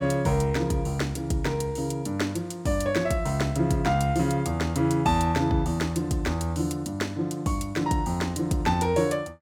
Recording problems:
none

